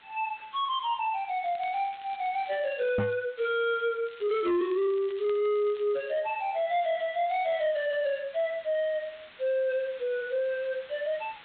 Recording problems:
treble cut off; nothing above 4 kHz
distortion; soft clipping, signal-to-distortion ratio 11 dB
background hiss; SNR 24 dB
crackling; from 1.5 to 3 s, from 4 to 6 s and at 7.5 s; loose cable, SNR 24 dB
microphone thump; at 3 s; peak +4 dB vs average level

